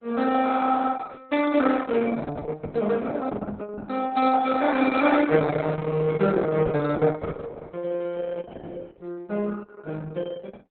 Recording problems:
lossy codec; Opus, log-spectral distance 4 dB, nothing above 3.9 kHz

